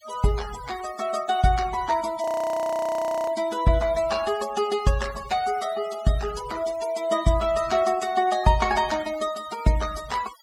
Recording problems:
denoising artefacts; signal-to-artefact ratio 15 dB
audio freezing; at 2 s for 1 s

